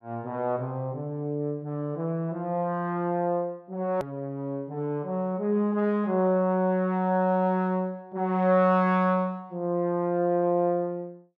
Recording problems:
hard cut with a click; at 4 s

